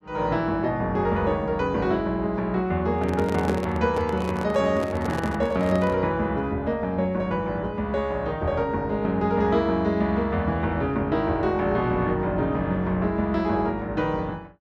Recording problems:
microphone handling noise; from 3 to 6 s; peak -1 dB vs average level

